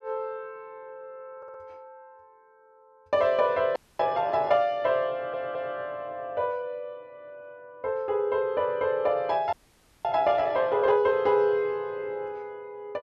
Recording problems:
audio stuttering; at 1.5 s and at 5 s
frozen audio; at 4 s and at 9.5 s for 0.5 s

